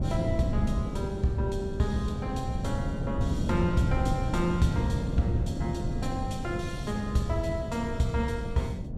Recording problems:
wind on the microphone; below 210 Hz, SNR 1 dB

